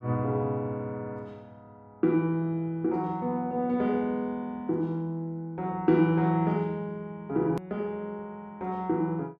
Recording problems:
hard cut with a click; at 7.5 s

